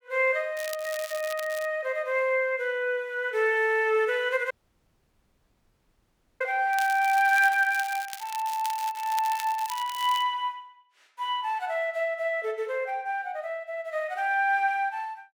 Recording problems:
crackle; from 0.5 to 1.5 s and from 6.5 to 10 s; loose cable, SNR 14 dB
audio cutting out; at 4.5 s for 2 s

